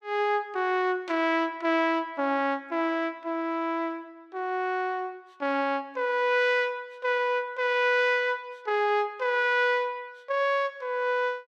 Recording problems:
none

